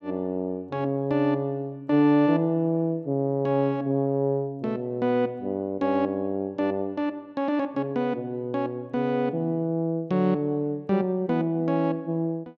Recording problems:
none

